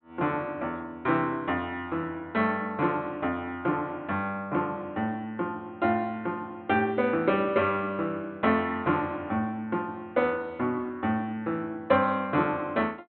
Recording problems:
treble missing; nothing above 4 kHz

